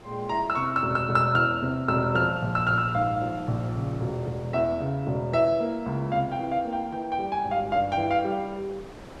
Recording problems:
wind on the microphone; below 1 kHz, SNR 21 dB

